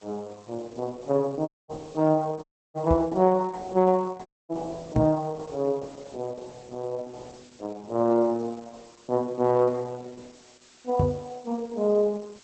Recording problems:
lossy compression; Opus, log-spectral distance 7 dB
background hiss; slope +1 dB per octave, SNR 28 dB
audio cutting out; at 1.5 s, at 2.5 s and at 4.5 s
microphone thump; at 3 s, at 5 s and at 11 s; peak +6 dB vs average level

